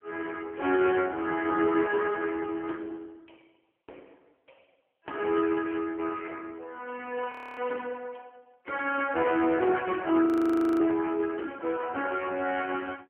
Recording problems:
phone line; 260 Hz to 3 kHz, AMR-NB
audio freezing; at 7.5 s and at 10 s for 0.5 s

